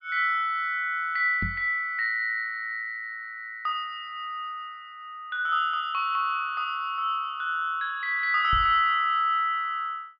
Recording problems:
treble cut off; nothing above 5.5 kHz
microphone thump; at 1.5 s and at 8.5 s; peak -3 dB vs average level

